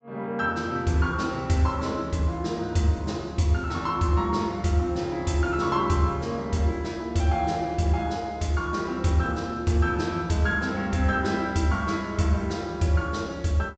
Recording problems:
treble missing; nothing above 8 kHz

